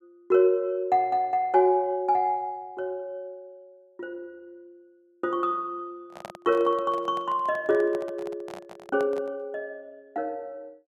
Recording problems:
handling noise; from 6 to 9.5 s; peak -8 dB vs average level

